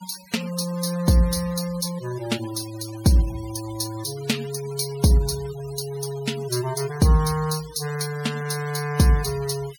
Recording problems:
noise reduction artefacts; signal-to-artefact ratio 16 dB

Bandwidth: 17 kHz